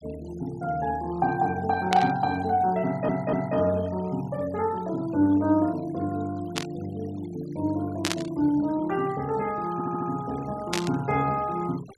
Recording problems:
noise reduction artefacts; signal-to-artefact ratio 22 dB
static burst; 4 times, first at 2 s; peak +4 dB vs average level
stutter; at 3 s and at 9.5 s

